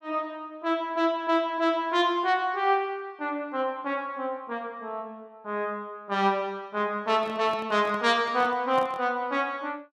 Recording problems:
handling noise; from 7 to 9 s; peak -8 dB vs average level

